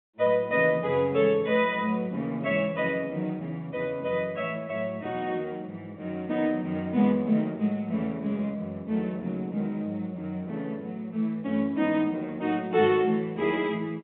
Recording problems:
telephone audio; 130 Hz to 3.7 kHz, G.711

